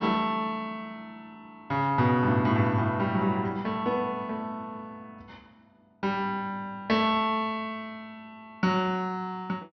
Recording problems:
treble cut off; nothing above 5.9 kHz

